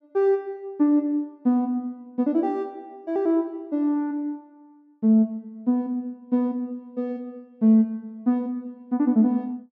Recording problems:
none

